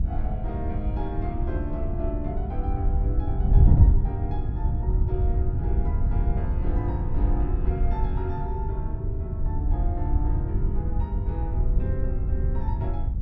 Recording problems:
hum; 50 Hz, harmonics up to 300 Hz, SNR 20 dB
wind on the microphone; below 90 Hz, SNR -10 dB

